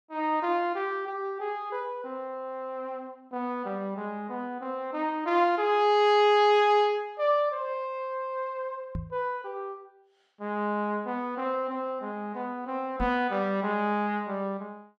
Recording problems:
knock on the microphone; at 9 s and at 13 s; peak -2 dB vs average level

